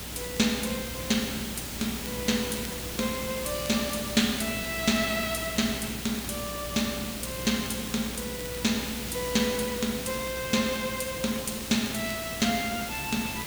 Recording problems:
hum; 60 Hz, harmonics up to 420 Hz, SNR 16 dB
background hiss; slope -2 dB per octave, SNR 5 dB
crackle; vinyl, SNR 22 dB

